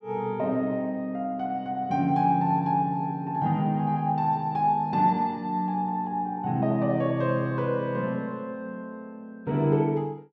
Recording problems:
none

